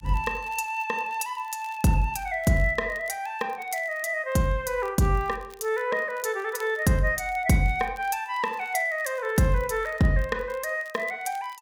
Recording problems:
crackling; vinyl, SNR 28 dB

